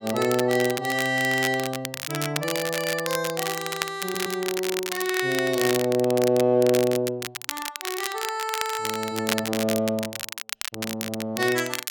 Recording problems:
crackle; vinyl, SNR 6 dB
audio stuttering; at 4 s

